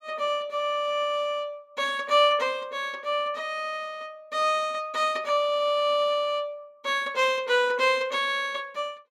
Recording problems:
none

